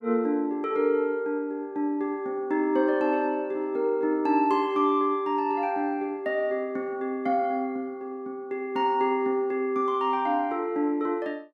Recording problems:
none

